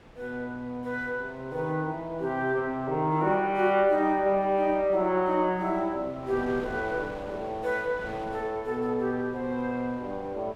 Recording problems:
wind noise; below 1.1 kHz, SNR 19 dB

